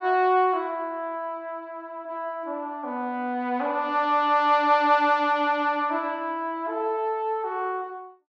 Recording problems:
none

